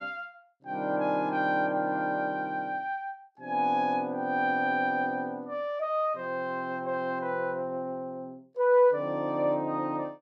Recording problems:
none

